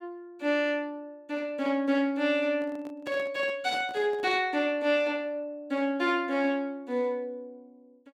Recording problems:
handling noise; from 2.5 to 4.5 s; peak -9 dB vs average level

